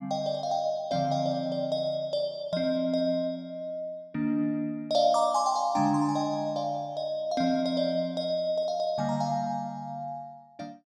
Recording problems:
none

